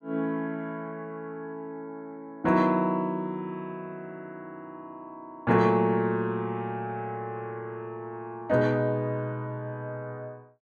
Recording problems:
none

